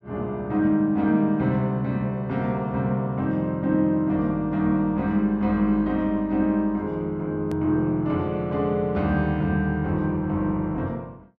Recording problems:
hard cut with a click; at 7.5 s

